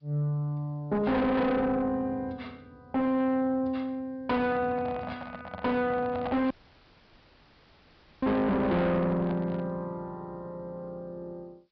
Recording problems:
treble cut off; nothing above 5.5 kHz
lossy compression; G.722, log-spectral distance 3 dB
distorted audio; soft clipping, signal-to-distortion ratio 6 dB
microphone handling noise; from 4.5 to 9.5 s; peak -2 dB vs average level
audio cutting out; at 6.5 s for 1.5 s

